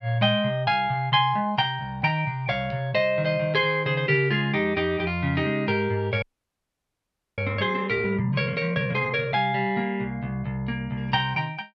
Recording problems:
audio freezing; at 6 s for 1 s

